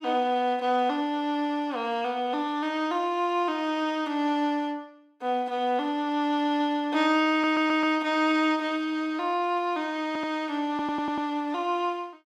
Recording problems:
audio stuttering; at 7.5 s, at 10 s and at 11 s

